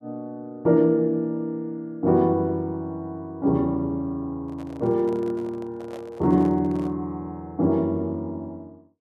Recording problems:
microphone handling noise; from 4.5 to 7 s; peak -12 dB vs average level

